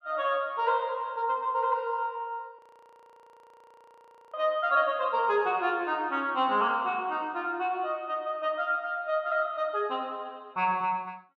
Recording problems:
audio freezing; at 2.5 s for 1.5 s

